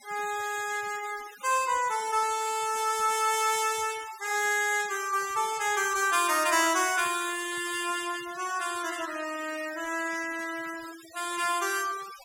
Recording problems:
noise reduction artefacts; signal-to-artefact ratio 15 dB

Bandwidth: 16.5 kHz